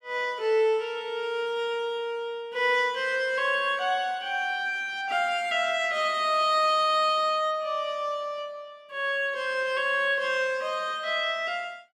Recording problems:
none

